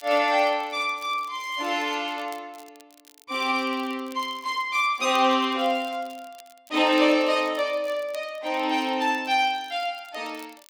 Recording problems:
crackling; vinyl, SNR 27 dB

